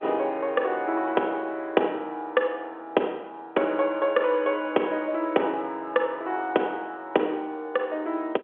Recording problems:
telephone audio; 280 Hz to 3.4 kHz, G.711

